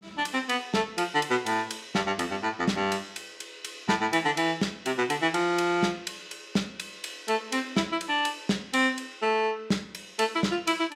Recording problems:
none

